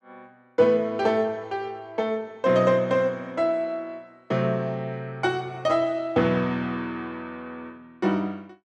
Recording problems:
none

